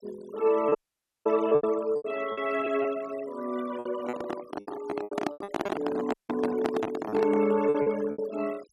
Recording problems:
noise reduction artefacts; signal-to-artefact ratio 17 dB
lost packets; 12% of the sound replaced, filled with repeated pitch periods
dropout; at 1 s for 0.5 s and at 6 s
handling noise; from 4 to 7.5 s; peak +3 dB vs average level

